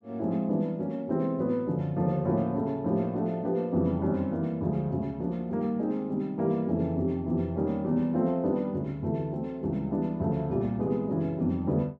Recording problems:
none

